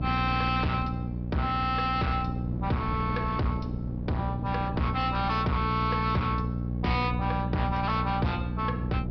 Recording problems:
treble missing; nothing above 5.5 kHz
distorted audio; hard clipping, uneven, signal-to-distortion ratio 7 dB
electrical hum; 60 Hz, harmonics up to 600 Hz, SNR 2 dB
wind on the microphone; below 290 Hz, SNR 12 dB

